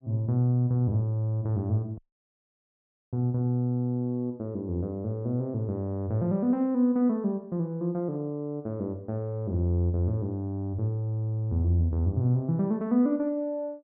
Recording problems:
audio cutting out; at 2 s for 1 s

